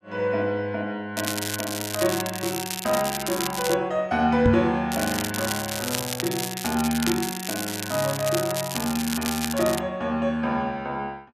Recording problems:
crackling; from 1 to 3.5 s and from 5 to 10 s; loose cable, SNR 4 dB
microphone bump; at 4.5 s; peak +8 dB vs average level

